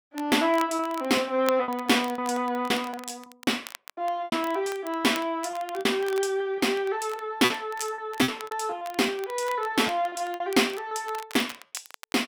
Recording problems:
crackling; vinyl, SNR 19 dB
lost packets; 9% of the sound replaced, filled with repeated pitch periods

